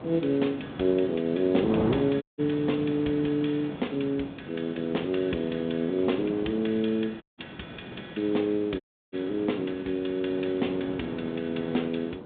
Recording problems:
phone line; 130 Hz to 3.7 kHz, G.726
wind noise; below 570 Hz, SNR 11 dB
audio cutting out; at 2 s, at 7 s and at 9 s

